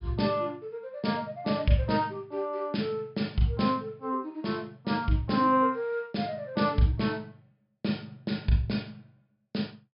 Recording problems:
treble cut off; nothing above 5.5 kHz

